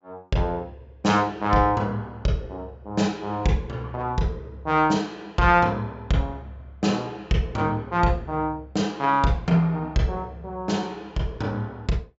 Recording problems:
low-pass filter; nothing above 8 kHz

